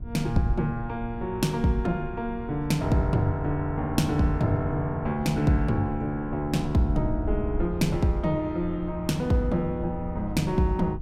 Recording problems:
hum; 60 Hz, harmonics up to 780 Hz, SNR 20 dB
wind on the microphone; below 80 Hz, SNR 12 dB

